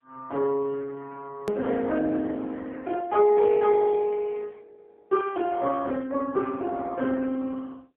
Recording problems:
phone line; 260 Hz to 3.4 kHz, AMR-NB
hard cut with a click; at 1.5 s

